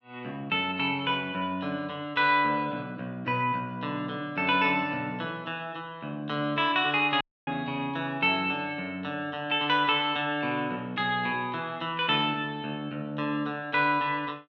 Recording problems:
audio cutting out; at 7 s

